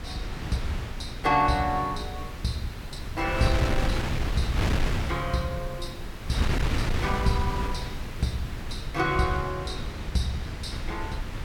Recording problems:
background hiss; slope -3 dB per octave, SNR 24 dB
wind noise; below 260 Hz, SNR 2 dB

